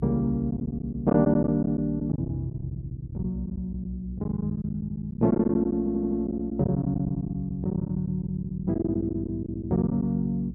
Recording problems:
hum; 60 Hz, harmonics up to 360 Hz, SNR 15 dB
lost packets; 12% of the sound replaced, filled with silence
stutter; at 6 s

